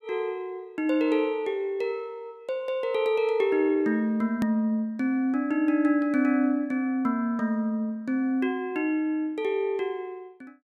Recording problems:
hard cut with a click; at 4.5 s

